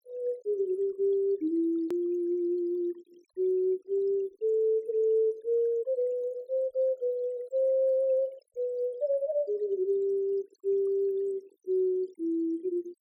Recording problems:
denoising artefacts; signal-to-artefact ratio 27 dB
edit click; at 2 s

